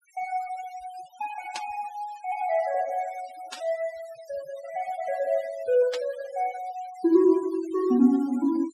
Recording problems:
noise reduction artefacts; signal-to-artefact ratio 22 dB
static burst; at 1.5 s, at 3.5 s and at 6 s; peak -4 dB vs average level

